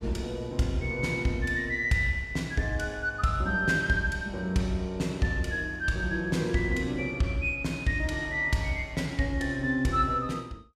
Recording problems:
none

